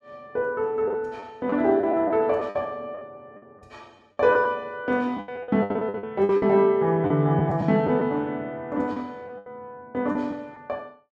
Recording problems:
lost packets; 10% of the sound replaced, filled with the last packet

